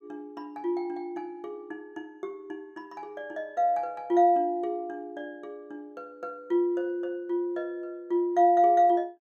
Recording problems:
none

